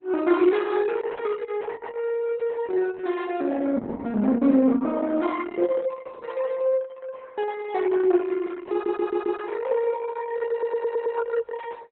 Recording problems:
codec artefacts; Opus, log-spectral distance 3 dB, nothing above 3.9 kHz
stutter; at 8.5 s and at 11 s

